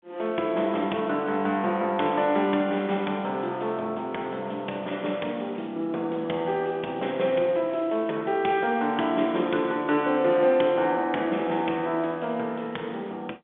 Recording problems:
phone line; 220 Hz to 3.6 kHz, G.711

